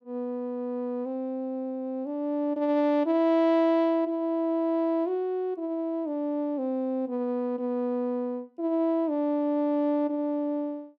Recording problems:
none

